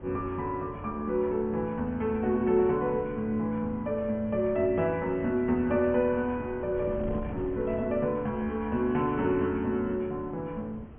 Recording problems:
treble cut off; nothing above 3.2 kHz
wind noise; below 310 Hz, SNR 16 dB

